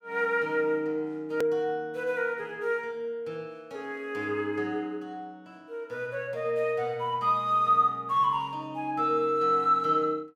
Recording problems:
click at an edit; at 1.5 s

